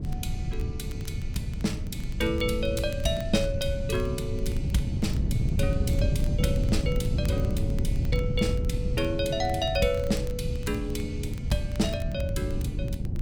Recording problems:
wind on the microphone; below 140 Hz, SNR 0 dB
crackle; vinyl, SNR 21 dB

